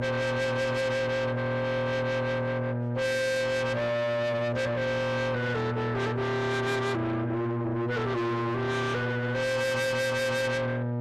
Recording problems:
lossy codec; AAC, log-spectral distance 2 dB, nothing above 14.7 kHz
distortion; soft clipping, signal-to-distortion ratio 6 dB
hum; 60 Hz, harmonics up to 2.2 kHz, SNR 3 dB

